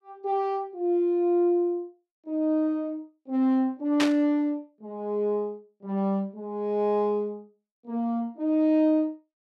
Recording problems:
burst of static; at 4 s; peak +3 dB vs average level

